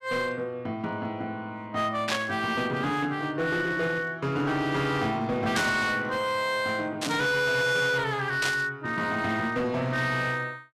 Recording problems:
distortion; hard clipping, signal-to-distortion ratio 10 dB
static burst; 4 times, first at 2 s; peak +2 dB vs average level

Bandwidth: 14 kHz